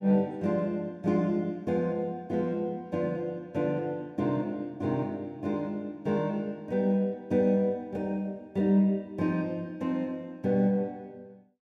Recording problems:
none

